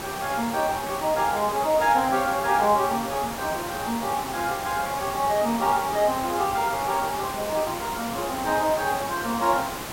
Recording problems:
background hiss; slope -4 dB per octave, SNR 8 dB

